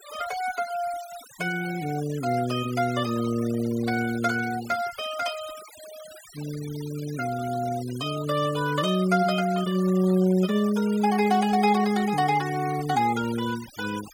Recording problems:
noise reduction artefacts; signal-to-artefact ratio 16 dB

